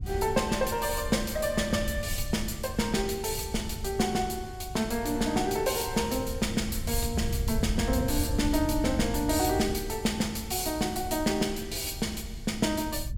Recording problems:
wind noise; below 96 Hz, SNR 8 dB

